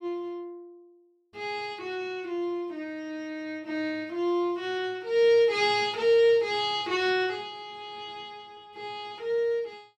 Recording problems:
none

